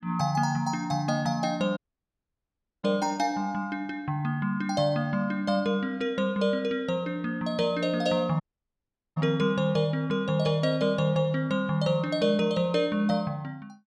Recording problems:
dropout; at 2 s for 1 s and at 8.5 s for 1 s

